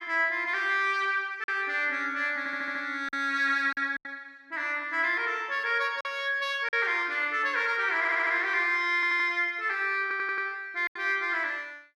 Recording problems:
lost packets; 3% of the sound replaced, filled with silence
audio stuttering; 4 times, first at 2.5 s

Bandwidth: 14 kHz